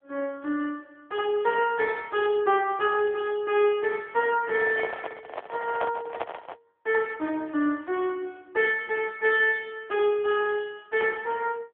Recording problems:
phone line; 170 Hz to 3.5 kHz, AMR-NB
handling noise; from 4.5 to 6.5 s; peak -2 dB vs average level

